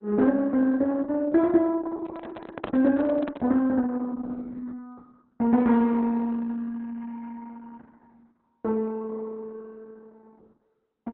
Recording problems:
lossy codec; Opus, log-spectral distance 3 dB
handling noise; from 2 to 3.5 s; peak +3 dB vs average level

